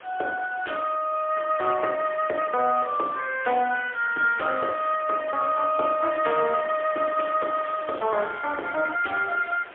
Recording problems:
phone line; 300 Hz to 3.3 kHz, AMR-NB, then MP3
hiss; SNR 20 dB

